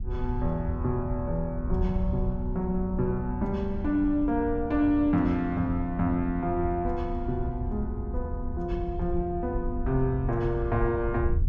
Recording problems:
wind noise; below 78 Hz, SNR 6 dB

